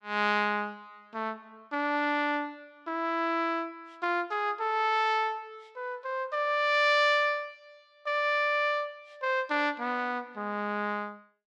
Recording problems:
none

